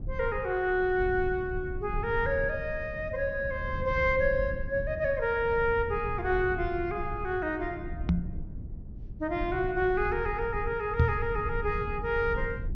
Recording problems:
treble missing; nothing above 6.3 kHz
low-frequency rumble; below 110 Hz, SNR 9 dB
microphone bump; at 8 s and at 11 s; peak +8 dB vs average level

